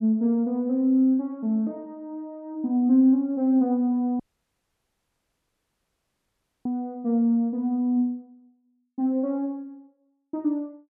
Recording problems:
audio cutting out; at 4 s for 2.5 s

